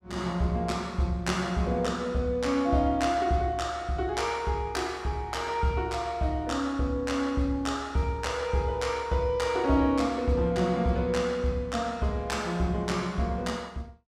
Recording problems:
none

